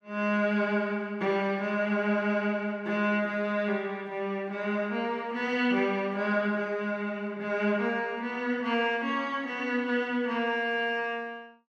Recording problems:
none

